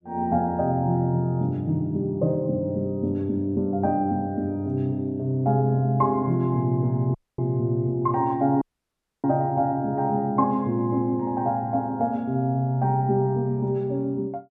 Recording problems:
audio cutting out; at 7 s and at 8.5 s for 0.5 s

